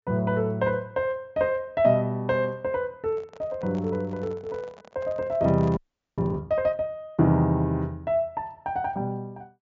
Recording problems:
low-pass filter; nothing above 7.3 kHz
microphone handling noise; from 3 to 6.5 s; peak -11 dB vs average level
audio freezing; at 6 s

